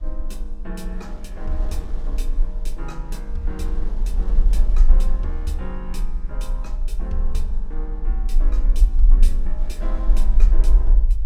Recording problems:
low-frequency rumble; below 40 Hz, strongest tone 26 Hz, SNR -12 dB
wind on the microphone; below 380 Hz, SNR 10 dB

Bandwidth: 16.5 kHz